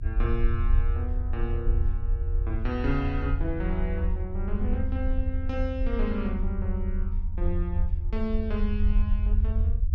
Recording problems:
low-frequency rumble; below 78 Hz, SNR -4 dB

